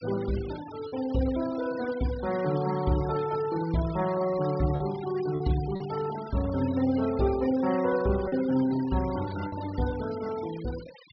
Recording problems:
treble cut off; nothing above 5.5 kHz
denoising artefacts; signal-to-artefact ratio 16 dB
lost packets; 2% of the sound replaced, filled with repeated pitch periods

